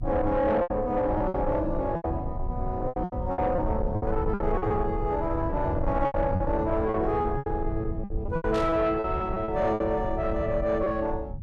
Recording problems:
distortion; soft clipping, signal-to-distortion ratio 11 dB
low-frequency rumble; below 120 Hz, SNR 6 dB
lost packets; 12% of the sound replaced, filled with repeated pitch periods
static burst; at 8.5 s; peak -9 dB vs average level

